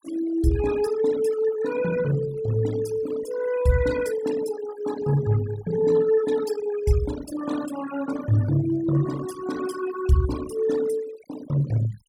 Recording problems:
denoising artefacts; signal-to-artefact ratio 14 dB

